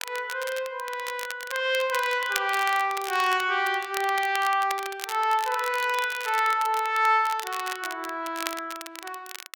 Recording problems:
crackling; vinyl, SNR 12 dB

